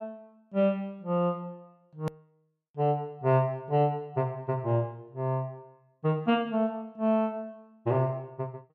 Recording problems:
click at an edit; at 2 s

